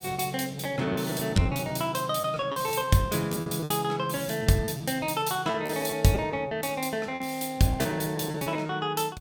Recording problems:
packet loss; 12% of the sound replaced, filled with repeated pitch periods

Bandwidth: 17 kHz